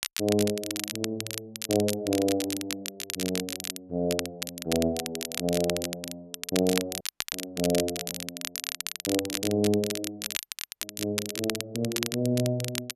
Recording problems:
crackling; vinyl, SNR 4 dB
dropout; at 7 s and at 10 s

